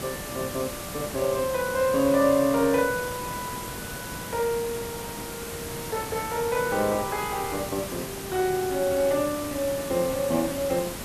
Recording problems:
hiss; slope -4 dB per octave, SNR 8 dB

